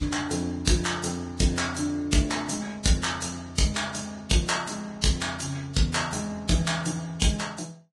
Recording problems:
lossy codec; Vorbis, log-spectral distance 5 dB, nothing above 10.4 kHz

